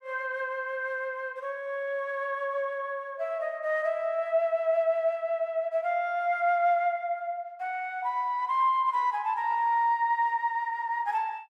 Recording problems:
none

